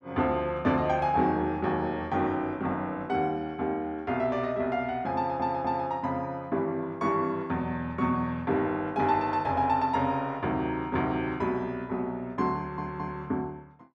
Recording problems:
audio stuttering; at 5 s and at 13 s

